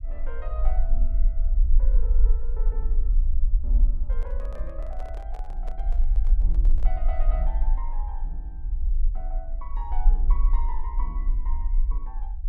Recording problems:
low-frequency rumble; below 40 Hz, strongest tone 24 Hz, SNR -16 dB
handling noise; from 4 to 7 s; peak +1 dB vs average level

